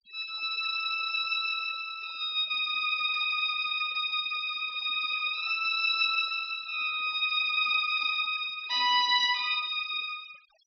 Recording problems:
treble missing; nothing above 5.9 kHz
denoising artefacts; signal-to-artefact ratio 26 dB

